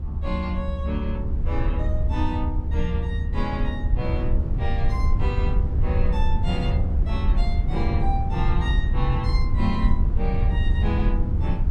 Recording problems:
low-frequency rumble; below 78 Hz, SNR -6 dB

